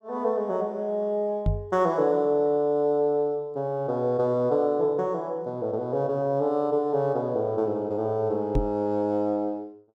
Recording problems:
microphone thump; at 1.5 s and at 8.5 s; peak +4 dB vs average level

